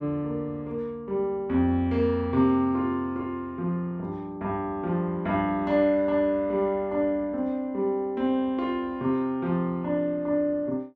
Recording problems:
none

